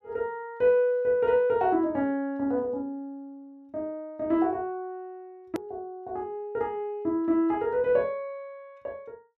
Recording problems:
click at an edit; at 5.5 s

